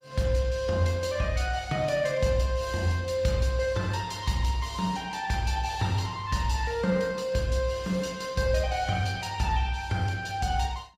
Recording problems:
lossy codec; Opus, log-spectral distance 3 dB, nothing above 15.5 kHz

